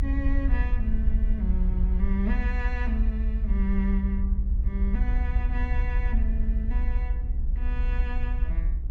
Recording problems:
low-frequency rumble; below 62 Hz, SNR -7 dB

